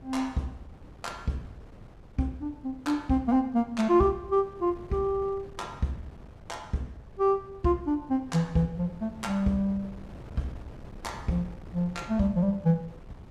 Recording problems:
wind on the microphone; below 310 Hz, SNR 19 dB

